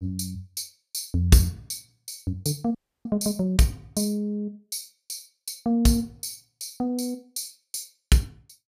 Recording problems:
audio cutting out; at 3 s

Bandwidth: 15 kHz